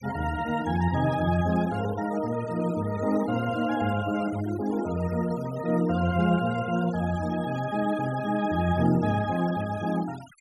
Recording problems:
denoising artefacts; signal-to-artefact ratio 18 dB

